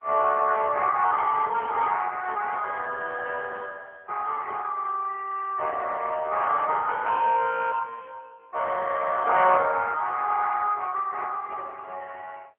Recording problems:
telephone audio; 390 Hz to 3.1 kHz, AMR-NB

